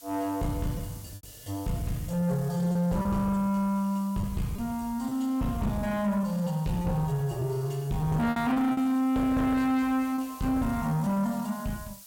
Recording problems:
distorted audio; soft clipping, signal-to-distortion ratio 10 dB
background hiss; slope +3 dB per octave, SNR 20 dB
lost packets; 5% of the sound replaced, filled with repeated pitch periods

